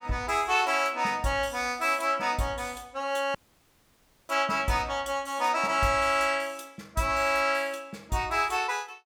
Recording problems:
audio cutting out; at 3.5 s for 1 s

